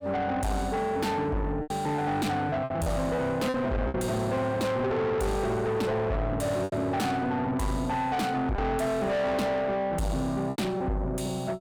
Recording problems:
distorted audio; soft clipping, signal-to-distortion ratio 6 dB
packet loss; 4% of the sound replaced, filled with repeated pitch periods

